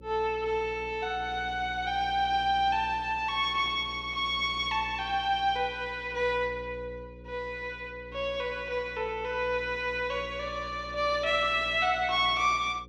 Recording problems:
hum; 60 Hz, harmonics up to 540 Hz, SNR 18 dB

